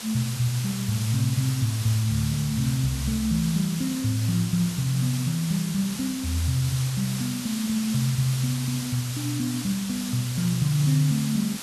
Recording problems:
background hiss; slope +1 dB per octave, SNR 8 dB

